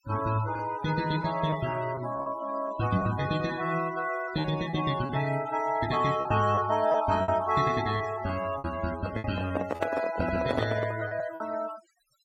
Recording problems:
denoising artefacts; signal-to-artefact ratio 14 dB
lost packets; 6% of the sound replaced, filled with repeated pitch periods
handling noise; from 9 to 11 s; peak +3 dB vs average level

